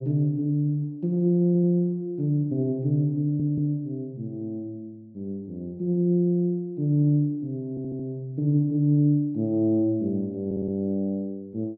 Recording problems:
audio stuttering; 4 times, first at 1.5 s

